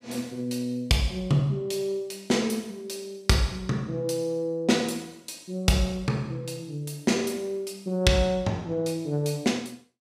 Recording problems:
none

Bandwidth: 15.5 kHz